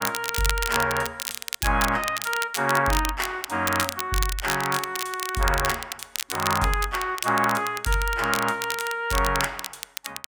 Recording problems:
crackle; vinyl, SNR 6 dB

